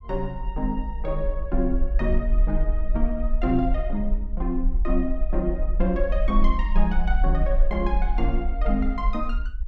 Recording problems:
low-frequency rumble; below 44 Hz, SNR -1 dB

